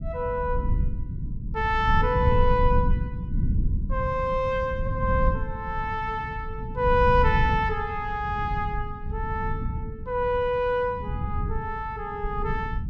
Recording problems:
low-frequency rumble; below 110 Hz, SNR 3 dB

